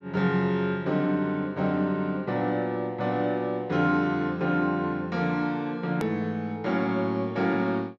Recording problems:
low-pass filter; nothing above 8 kHz
click at an edit; at 6 s

